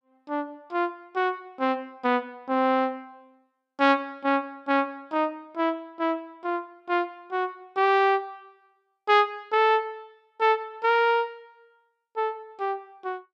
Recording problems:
none

